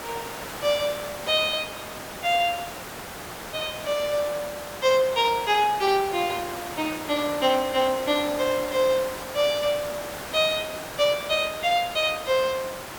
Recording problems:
hiss; SNR 10 dB

